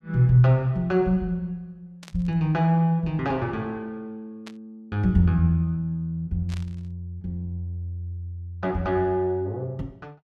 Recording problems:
static burst; at 2 s, at 4.5 s and at 6.5 s; peak -13 dB vs average level

